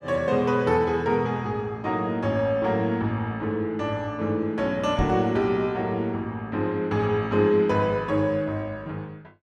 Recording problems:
microphone bump; at 5 s; peak +2 dB vs average level

